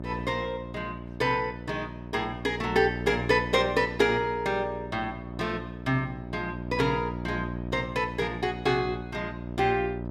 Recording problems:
electrical hum; 60 Hz, harmonics up to 1 kHz, SNR 9 dB

